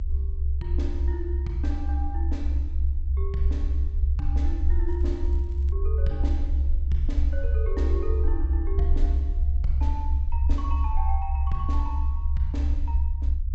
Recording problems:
low-pass filter; nothing above 7.9 kHz
rumble; below 70 Hz, SNR -10 dB
crackle; at 5 s; loose cable, SNR 28 dB

